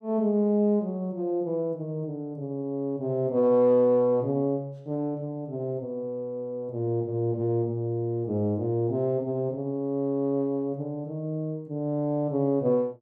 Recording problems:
none

